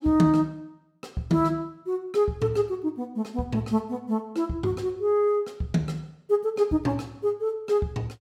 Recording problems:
none

